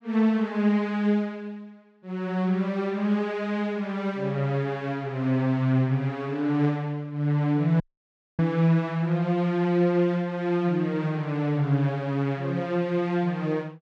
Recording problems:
dropout; at 8 s for 0.5 s

